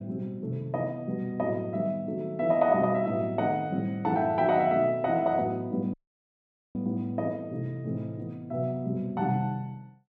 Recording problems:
dropout; at 6 s for 1 s

